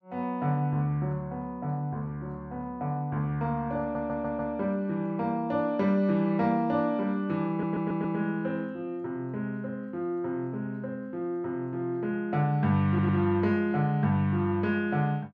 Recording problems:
stutter; at 4 s, at 7.5 s and at 13 s

